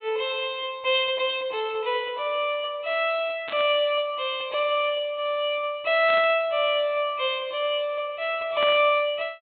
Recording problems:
treble missing; nothing above 4 kHz
burst of static; at 3.5 s, at 6 s and at 8.5 s; peak -5 dB vs average level

